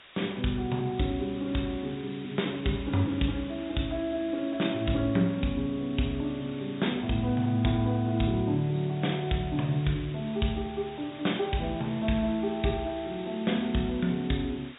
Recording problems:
treble cut off; nothing above 4 kHz
background hiss; SNR 18 dB

